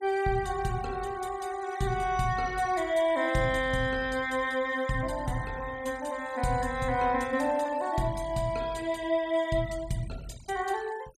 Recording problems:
denoising artefacts; signal-to-artefact ratio 21 dB

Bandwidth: 14.5 kHz